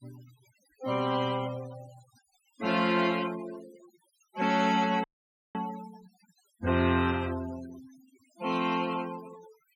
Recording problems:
denoising artefacts; signal-to-artefact ratio 17 dB
audio cutting out; at 5 s for 0.5 s

